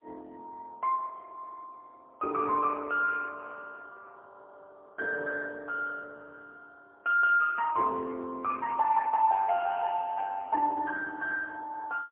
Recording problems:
phone line; 280 Hz to 2.3 kHz, AMR-NB, then MP3

